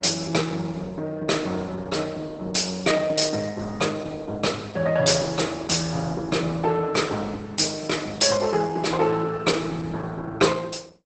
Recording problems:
lossy codec; Opus, log-spectral distance 5 dB, nothing above 8 kHz

